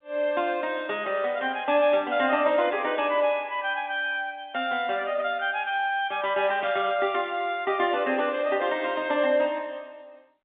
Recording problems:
phone line; 260 Hz to 3.6 kHz, G.711

